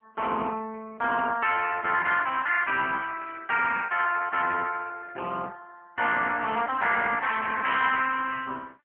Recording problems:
telephone audio; 320 Hz to 3.2 kHz, AMR-NB

